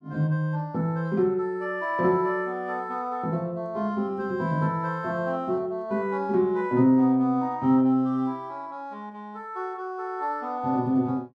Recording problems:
none

